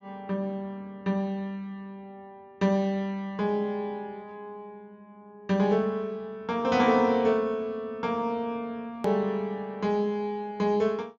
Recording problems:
treble missing; nothing above 7.3 kHz
click at an edit; at 9 s

